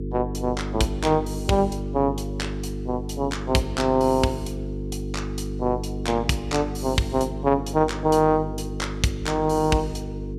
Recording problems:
hum; 50 Hz, harmonics up to 450 Hz, SNR 7 dB

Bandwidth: 14.5 kHz